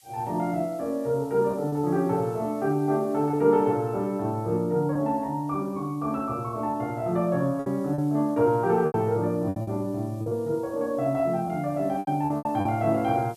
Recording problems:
background hiss; SNR 29 dB
packet loss; 6% of the sound replaced, filled with repeated pitch periods

